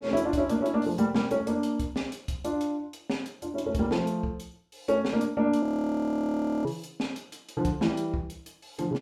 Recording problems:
frozen audio; at 5.5 s for 1 s

